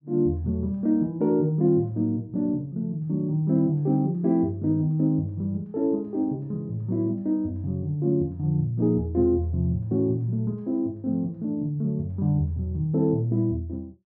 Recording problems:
none

